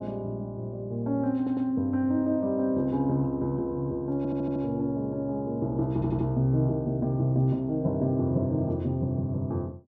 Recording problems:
audio stuttering; at 1.5 s, at 4 s and at 6 s

